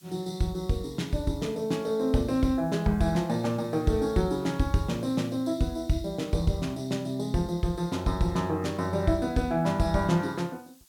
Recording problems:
background hiss; slope +3 dB per octave, SNR 29 dB

